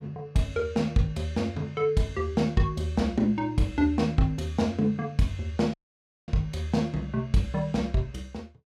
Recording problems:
dropout; at 5.5 s for 0.5 s

